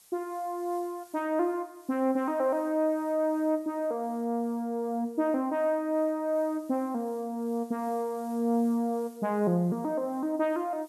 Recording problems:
background hiss; slope +1 dB per octave, SNR 27 dB

